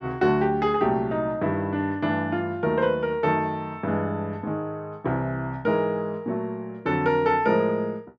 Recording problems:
none

